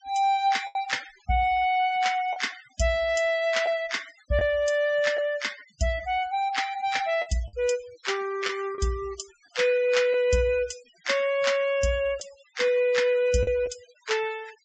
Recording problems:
treble cut off; nothing above 8 kHz
noise reduction artefacts; signal-to-artefact ratio 21 dB
packet loss; 3% of the sound replaced, filled with the last packet

